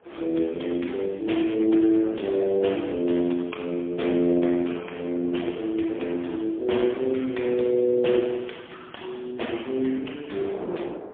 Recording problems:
phone line; 220 Hz to 3.5 kHz, AMR-NB, then MP3
wind on the microphone; below 680 Hz, SNR 15 dB

